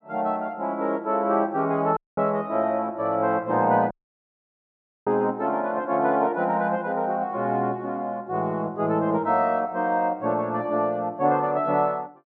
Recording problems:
dropout; at 2 s and at 4 s for 1 s

